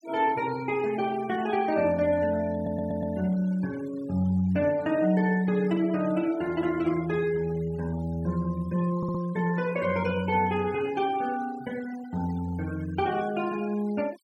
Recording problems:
denoising artefacts; signal-to-artefact ratio 20 dB
stutter; at 2.5 s and at 9 s

